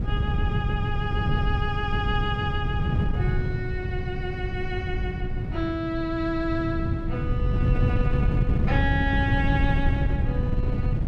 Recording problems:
wind noise; below 140 Hz, SNR -4 dB

